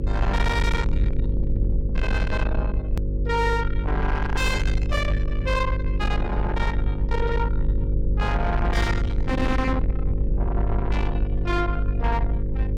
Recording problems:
distorted audio; soft clipping, signal-to-distortion ratio 6 dB
mains hum; 50 Hz, harmonics up to 550 Hz, SNR 1 dB
low-frequency rumble; below 94 Hz, SNR 3 dB
click at an edit; at 3 s

